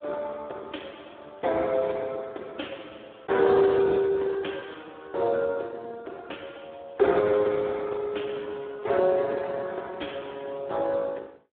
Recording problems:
phone line; 280 Hz to 3.6 kHz, Speex

